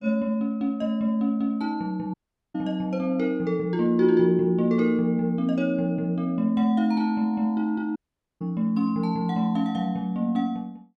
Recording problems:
audio cutting out; at 2 s and at 8 s

